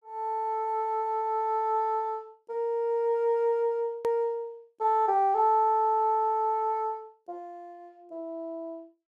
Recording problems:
edit click; at 4 s

